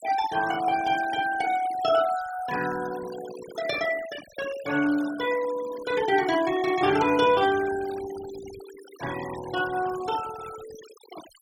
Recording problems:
denoising artefacts; signal-to-artefact ratio 15 dB

